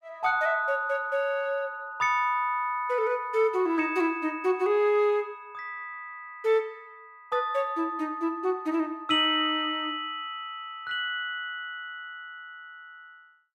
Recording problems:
none

